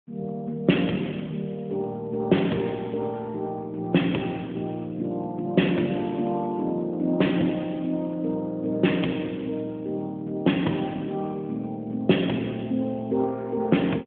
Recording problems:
phone line; 130 Hz to 3.5 kHz, AMR-NB

